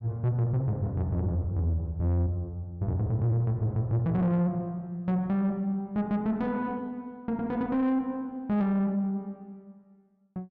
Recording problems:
distorted audio; soft clipping, signal-to-distortion ratio 11 dB

